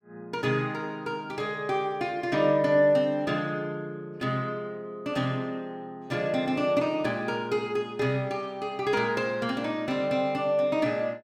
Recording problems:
none

